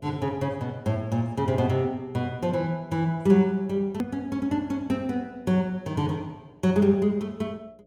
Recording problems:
electrical hum; 60 Hz, harmonics up to 660 Hz, SNR 30 dB
edit click; at 4 s

